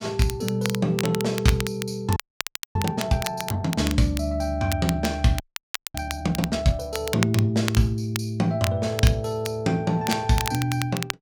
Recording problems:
crackle; vinyl, SNR 9 dB
audio freezing; at 2 s for 0.5 s and at 5.5 s for 0.5 s

